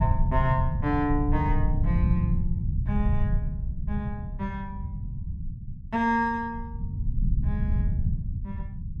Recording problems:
low-frequency rumble; below 120 Hz, SNR -1 dB

